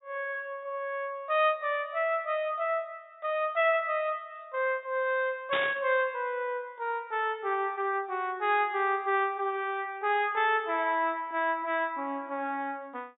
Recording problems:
treble missing; nothing above 4 kHz
static burst; at 5.5 s; peak +1 dB vs average level

